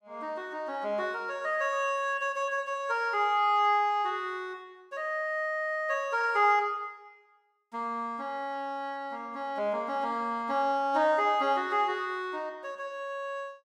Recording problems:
none

